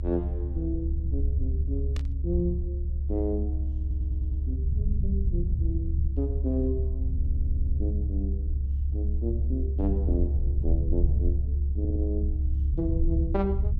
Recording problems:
low-frequency rumble; below 72 Hz, strongest tone 70 Hz, SNR -6 dB
burst of static; at 2 s; peak -4 dB vs average level
audio stuttering; at 4 s, at 7 s and at 12 s

